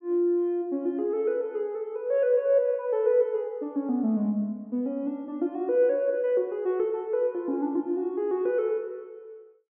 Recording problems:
low-pass filter; nothing above 3.3 kHz

